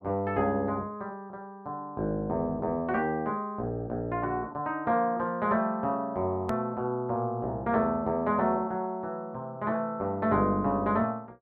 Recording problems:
edit click; at 6.5 s

